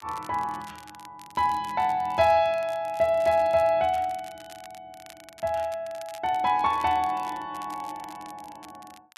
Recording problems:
crackling; vinyl, SNR 24 dB

